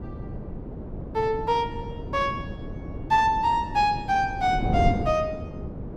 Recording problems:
wind on the microphone; below 300 Hz, SNR 8 dB

